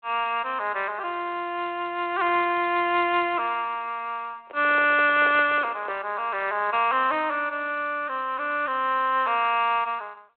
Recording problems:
phone line; 300 Hz to 3.4 kHz, G.726
microphone handling noise; from 4.5 to 6 s; peak -6 dB vs average level

